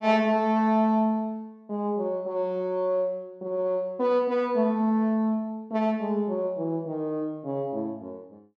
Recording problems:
none

